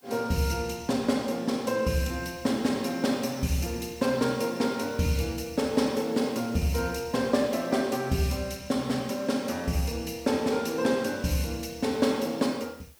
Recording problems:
hiss; slope -1 dB per octave, SNR 28 dB

